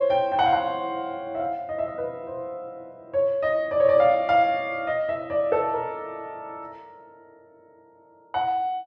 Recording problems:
none

